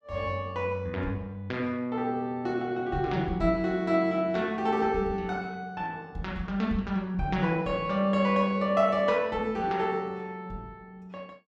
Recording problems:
none

